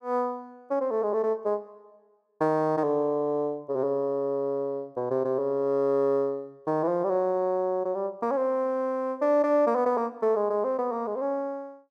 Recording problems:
none

